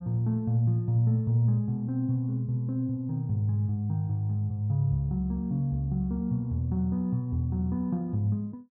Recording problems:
none

